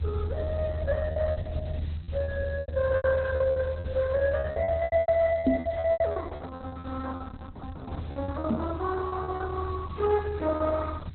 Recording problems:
lossy compression; Opus, log-spectral distance 7 dB, nothing above 4 kHz
hiss; SNR 27 dB
rumble; below 84 Hz, strongest tone 78 Hz, SNR 5 dB
lost packets; 13% of the sound replaced, filled with repeated pitch periods
microphone thump; at 5.5 s and at 8.5 s; peak +10 dB vs average level

